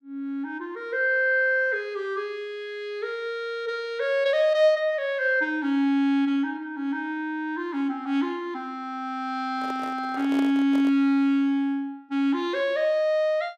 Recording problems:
microphone handling noise; from 9.5 to 11 s; peak -6 dB vs average level

